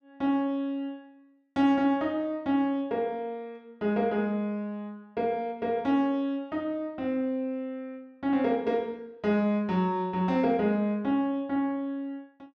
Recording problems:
none

